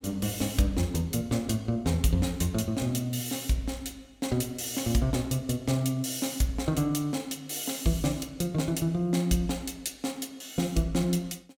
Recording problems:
none

